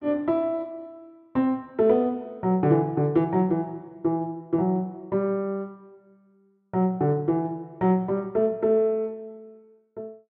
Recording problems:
none

